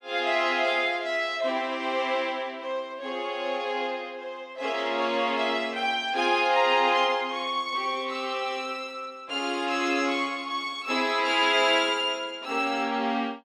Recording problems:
none

